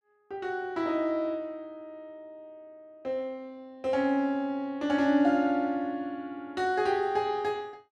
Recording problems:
none

